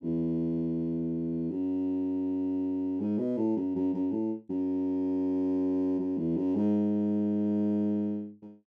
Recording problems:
none

